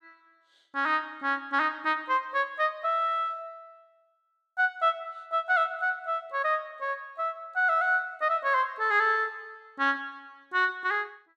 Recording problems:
none

